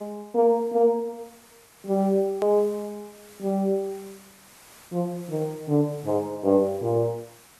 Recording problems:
background hiss; slope -2 dB per octave, SNR 25 dB
hard cut with a click; at 2.5 s

